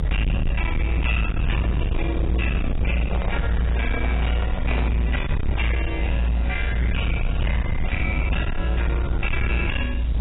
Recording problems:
lossy codec; AAC, log-spectral distance 4 dB
distorted audio; hard clipping, uneven, signal-to-distortion ratio 7 dB
background hiss; SNR 16 dB
rumble; below 94 Hz, strongest tone 58 Hz, SNR -4 dB
handling noise; from 3 to 5 s; peak +3 dB vs average level

